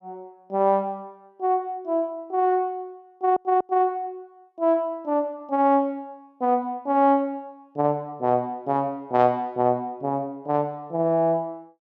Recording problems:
stutter; at 3 s

